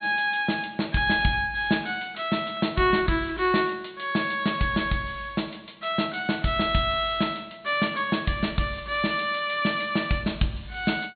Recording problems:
treble cut off; nothing above 4.4 kHz

